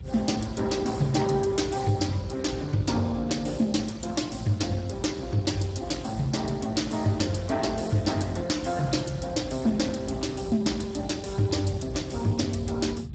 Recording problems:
codec artefacts; Speex, log-spectral distance 5 dB, nothing above 7.8 kHz
low-frequency rumble; below 160 Hz, SNR 13 dB

